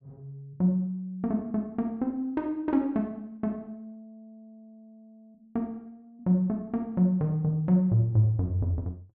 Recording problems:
none

